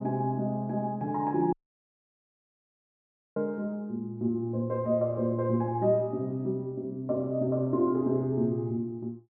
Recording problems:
audio cutting out; at 1.5 s for 2 s

